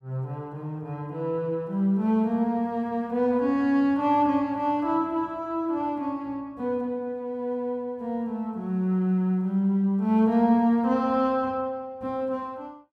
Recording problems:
none

